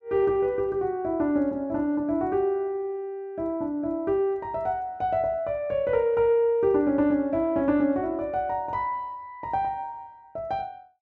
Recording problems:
none

